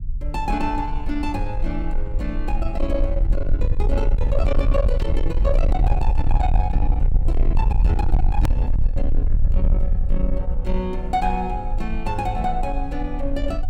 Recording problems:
distorted audio; soft clipping, signal-to-distortion ratio 8 dB
rumble; below 54 Hz, SNR -3 dB
click at an edit; at 8.5 s

